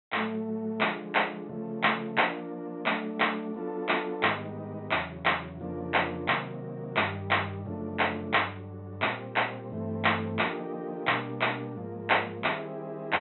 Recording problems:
treble missing; nothing above 3.9 kHz

